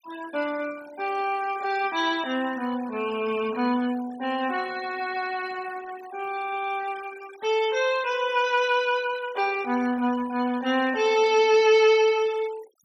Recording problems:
noise reduction artefacts; signal-to-artefact ratio 20 dB

